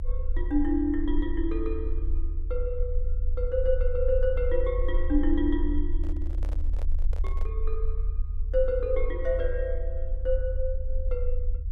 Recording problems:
low-frequency rumble; below 42 Hz, strongest tone 20 Hz, SNR 1 dB
microphone handling noise; from 6 to 7.5 s; peak -11 dB vs average level

